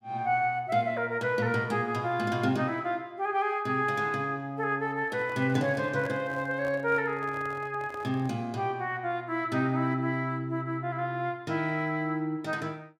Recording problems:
microphone handling noise; from 5 to 8.5 s; peak -10 dB vs average level

